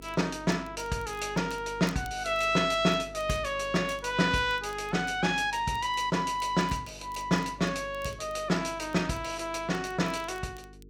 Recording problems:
hum; 50 Hz, harmonics up to 450 Hz, SNR 20 dB
crackle; vinyl, SNR 27 dB

